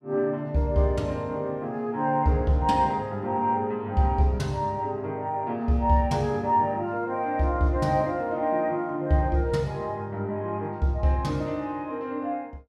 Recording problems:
none

